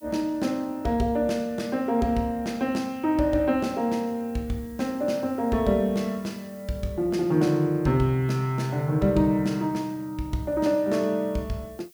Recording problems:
background hiss; SNR 27 dB

